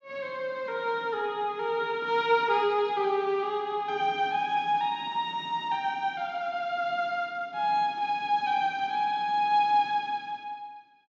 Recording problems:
treble cut off; nothing above 8 kHz

